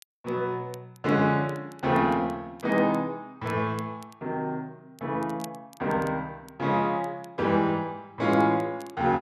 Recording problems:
crackle; vinyl, SNR 27 dB

